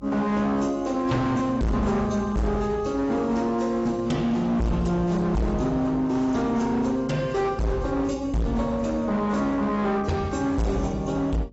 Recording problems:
lossy compression; AAC, log-spectral distance 2 dB, nothing above 7.6 kHz
distorted audio; hard clipping, signal-to-distortion ratio 7 dB
electrical hum; 50 Hz, harmonics up to 600 Hz, SNR 23 dB

